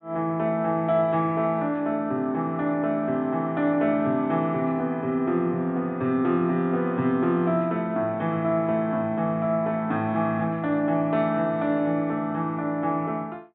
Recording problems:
low-pass filter; nothing above 4 kHz

